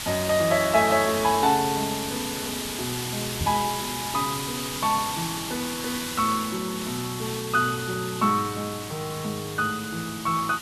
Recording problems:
background hiss; SNR 5 dB
microphone thump; at 3.5 s; peak 0 dB vs average level

